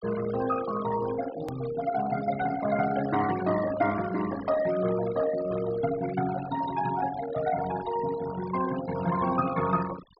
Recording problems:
treble cut off; nothing above 5.2 kHz
denoising artefacts; signal-to-artefact ratio 12 dB
edit click; at 1.5 s

